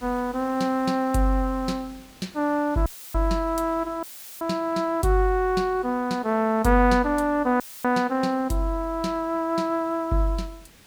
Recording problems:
background hiss; slope -2 dB per octave, SNR 26 dB
audio cutting out; at 3 s, at 4 s and at 7.5 s; filled with static

